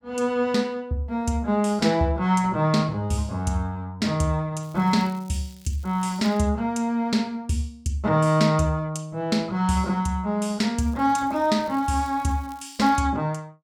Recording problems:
crackling; from 4.5 to 6.5 s and from 11 to 13 s; loose cable, SNR 28 dB

